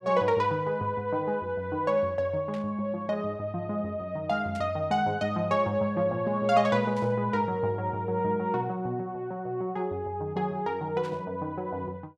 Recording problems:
static burst; 4 times, first at 2.5 s; peak -14 dB vs average level

